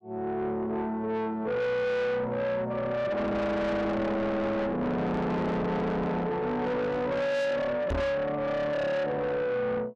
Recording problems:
distortion; soft clipping, signal-to-distortion ratio 6 dB
microphone bump; at 8 s; peak +4 dB vs average level

